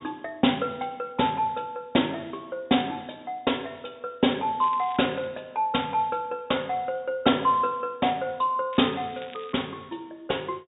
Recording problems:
treble missing; nothing above 4 kHz
crackle; at 4.5 s and at 8.5 s; loose cable, SNR 21 dB

